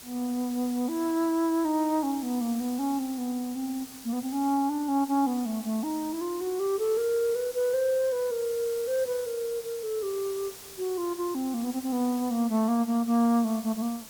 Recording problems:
hiss; slope -1 dB per octave, SNR 15 dB

